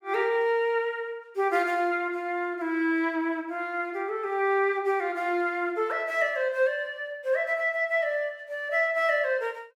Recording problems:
none

